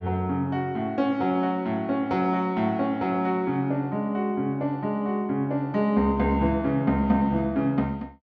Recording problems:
none

